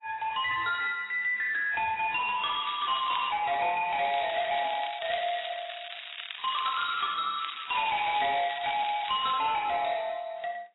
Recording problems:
lossy compression; AAC, then AAC, log-spectral distance 13 dB, nothing above 3.3 kHz
distorted audio; soft clipping, signal-to-distortion ratio 10 dB
crackle; at 2.5 s, from 4 to 7 s and from 7.5 to 9.5 s; loose cable, SNR 10 dB

